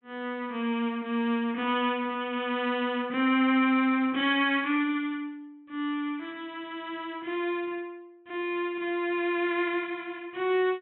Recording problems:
treble missing; nothing above 3.6 kHz

